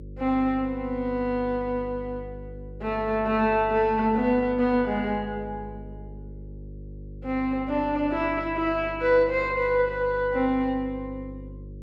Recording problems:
electrical hum; 50 Hz, harmonics up to 550 Hz, SNR 16 dB

